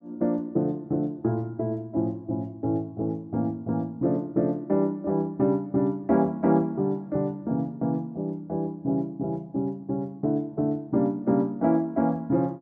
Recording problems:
none

